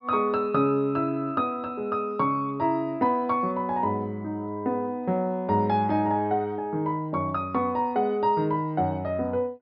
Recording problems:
treble missing; nothing above 5.5 kHz

